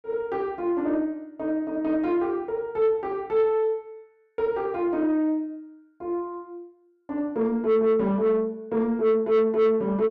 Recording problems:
distortion; soft clipping, signal-to-distortion ratio 11 dB

